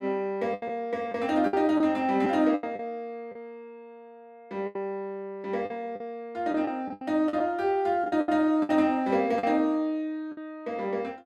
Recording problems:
packet loss; 9% of the sound replaced, filled with the last packet

